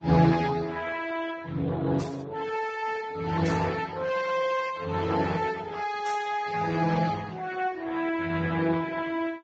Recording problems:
lossy compression; Speex, then Vorbis, log-spectral distance 5 dB, nothing above 7.1 kHz
static burst; at 2 s, at 3.5 s and at 6 s; peak -10 dB vs average level

